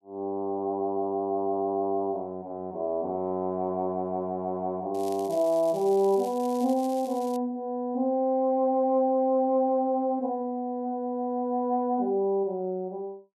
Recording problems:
crackling; from 5 to 7.5 s; loose cable, SNR 21 dB

